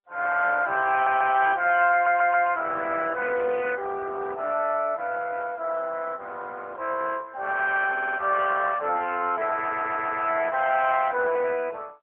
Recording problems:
phone line; 340 Hz to 3.1 kHz, AMR-NB
audio stuttering; 4 times, first at 1 s

